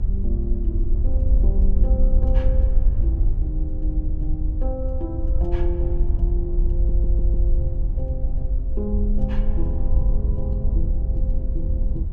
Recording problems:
rumble; below 68 Hz, strongest tone 28 Hz, SNR 8 dB
wind on the microphone; below 60 Hz, SNR -9 dB
audio stuttering; at 6.5 s

